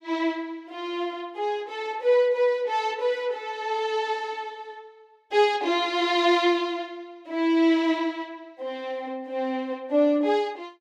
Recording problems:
none

